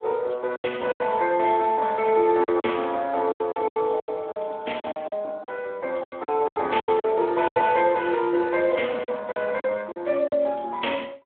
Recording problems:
telephone audio; 280 Hz to 3.5 kHz, Speex
packet loss; 12% of the sound replaced, filled with silence

